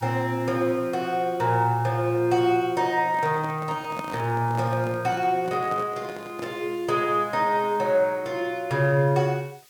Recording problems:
background hiss; SNR 28 dB
microphone handling noise; from 3 to 6.5 s; peak -6 dB vs average level

